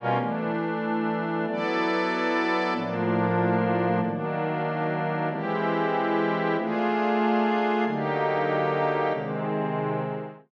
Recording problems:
none

